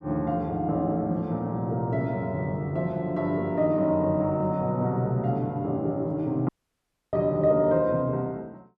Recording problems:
audio cutting out; at 6.5 s for 0.5 s

